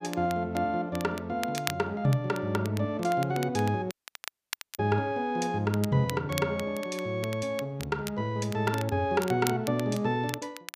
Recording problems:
crackle; vinyl, SNR 13 dB
dropout; at 4 s for 1 s

